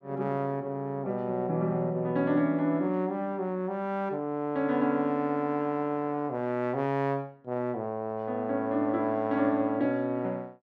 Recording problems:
none

